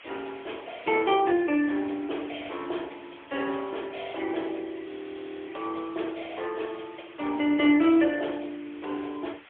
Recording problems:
phone line; 260 Hz to 3.4 kHz, AMR-NB, then MP3
background hiss; SNR 21 dB
frozen audio; at 5 s for 0.5 s

